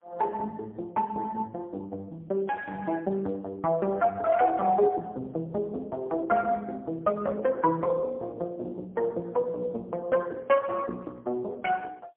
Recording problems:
phone line; 260 Hz to 3.3 kHz, AMR-NB, then MP3

